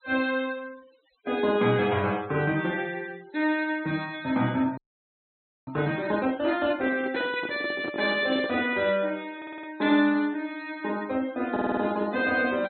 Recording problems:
treble missing; nothing above 4.2 kHz
noise reduction artefacts; signal-to-artefact ratio 22 dB
frozen audio; at 5 s for 1 s
microphone handling noise; from 7 to 9 s; peak -4 dB vs average level
stutter; at 9.5 s and at 12 s

